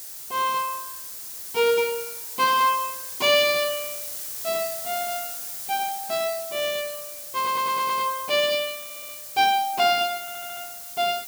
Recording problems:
hiss; SNR 9 dB
stutter; at 7.5 s, at 9 s and at 10 s

